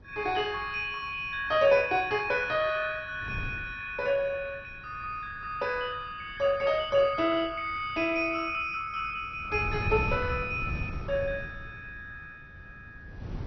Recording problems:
lossy compression; MP2, log-spectral distance 3 dB, nothing above 5.2 kHz
wind noise; below 170 Hz, SNR 13 dB

